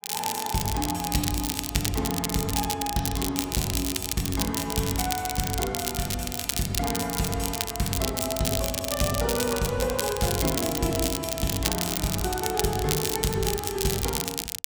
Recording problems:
crackle; vinyl, SNR 1 dB

